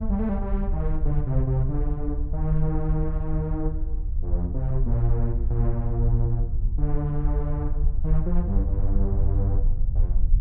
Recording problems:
rumble; below 58 Hz, SNR -1 dB

